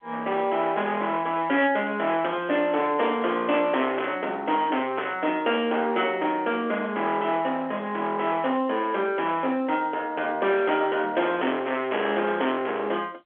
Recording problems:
phone line; 260 Hz to 3.5 kHz, G.711
distorted audio; hard clipping, signal-to-distortion ratio 8 dB

